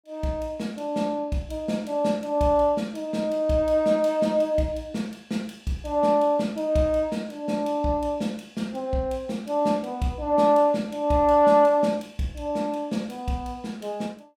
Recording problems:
none

